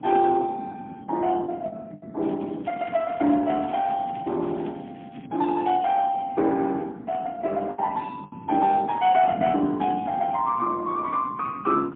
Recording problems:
phone line; 220 Hz to 3.6 kHz, AMR-NB, then MP3
wind noise; below 310 Hz, SNR 15 dB
lost packets; 3% of the sound replaced, filled with the last packet
crackle; from 2 to 5.5 s; loose cable, SNR 28 dB

